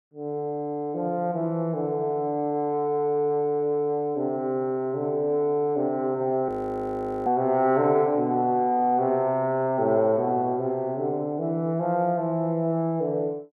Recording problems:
audio freezing; at 6.5 s for 1 s

